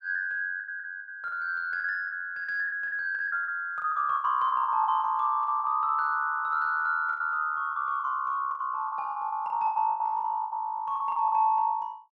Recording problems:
lost packets; 15% of the sound replaced, filled with the last packet

